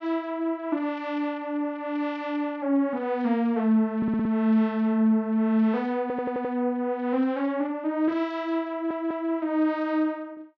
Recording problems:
stutter; at 4 s, at 6 s and at 8.5 s

